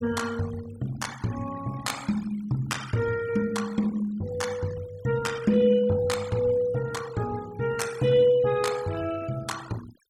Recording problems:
noise reduction artefacts; signal-to-artefact ratio 17 dB

